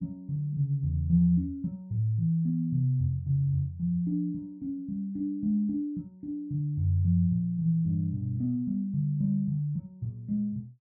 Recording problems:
none

